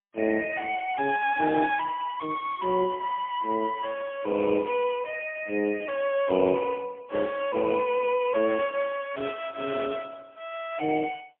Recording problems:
telephone audio; 240 Hz to 2.9 kHz, AMR-NB, then MP3

